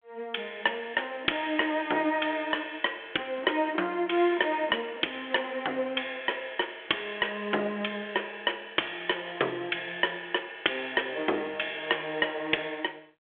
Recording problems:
phone line; 280 Hz to 3.4 kHz, G.726

